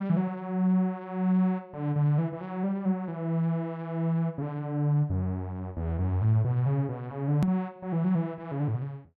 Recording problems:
edit click; at 7.5 s

